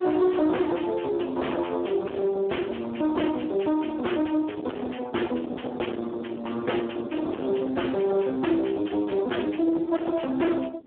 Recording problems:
phone line; 220 Hz to 3.3 kHz, Speex
distortion; soft clipping, signal-to-distortion ratio 5 dB
wind on the microphone; below 640 Hz, SNR 16 dB

